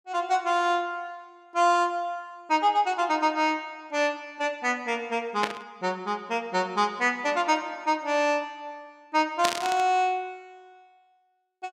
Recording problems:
static burst; at 5.5 s and at 9.5 s; peak +4 dB vs average level

